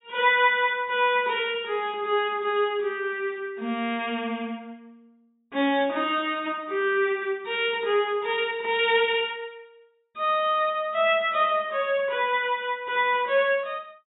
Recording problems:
treble cut off; nothing above 4 kHz

